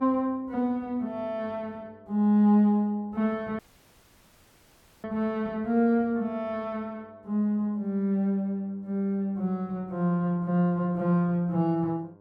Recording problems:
electrical hum; 50 Hz, harmonics up to 1.5 kHz, SNR 29 dB
audio cutting out; at 3.5 s for 1.5 s

